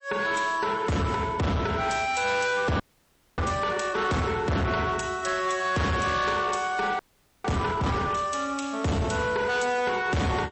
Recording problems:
lossy codec; MP3, log-spectral distance 4 dB, nothing above 8 kHz
distorted audio; hard clipping, signal-to-distortion ratio 6 dB
frozen audio; at 3 s for 0.5 s and at 7 s

